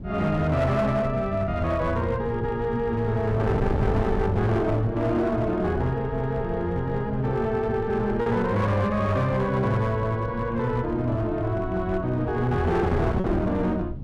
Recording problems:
distortion; hard clipping, signal-to-distortion ratio 11 dB
wind noise; below 190 Hz, SNR 9 dB
lost packets; 0.6% of the sound replaced, filled with repeated pitch periods

